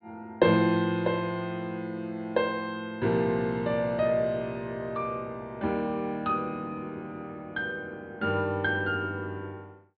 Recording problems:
low-pass filter; nothing above 4.6 kHz

